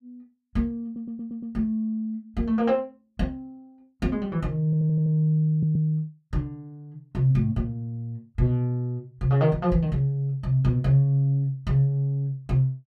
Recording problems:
stutter; at 1 s, at 4.5 s and at 5.5 s

